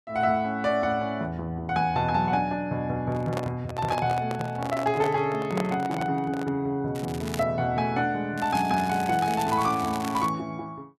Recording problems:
microphone handling noise; from 3 to 6.5 s; peak -1 dB vs average level
crackle; at 7 s and from 8.5 to 10 s; loose cable, SNR 14 dB

